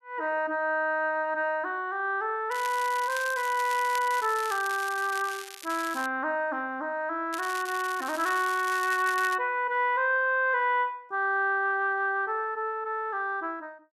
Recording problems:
crackling; from 2.5 to 6 s and from 7.5 to 9.5 s; loose cable, SNR 13 dB

